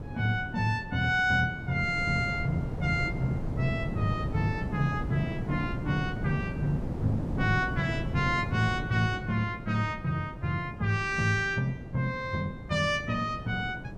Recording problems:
wind noise; below 270 Hz, SNR 7 dB

